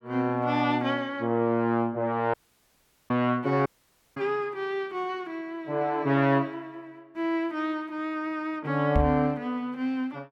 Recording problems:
audio cutting out; at 2.5 s for 1 s and at 3.5 s for 0.5 s
microphone thump; at 9 s; peak +5 dB vs average level

